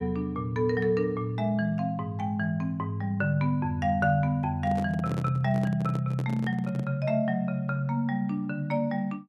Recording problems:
handling noise; from 4.5 to 7 s; peak -5 dB vs average level

